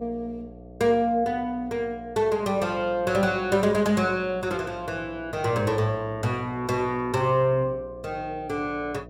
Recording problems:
hum; 60 Hz, harmonics up to 720 Hz, SNR 20 dB

